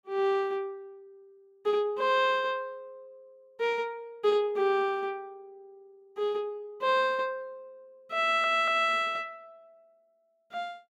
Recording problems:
stutter; at 8 s

